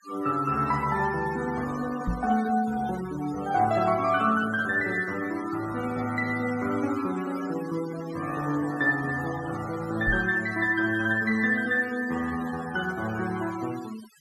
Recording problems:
noise reduction artefacts; signal-to-artefact ratio 15 dB
knock on the microphone; at 2 s and at 10 s; peak +1 dB vs average level

